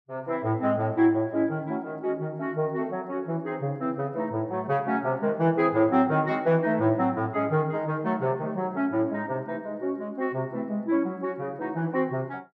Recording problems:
none

